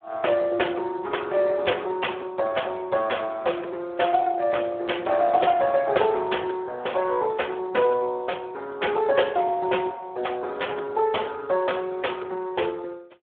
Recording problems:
telephone audio; 300 Hz to 3.5 kHz, Speex

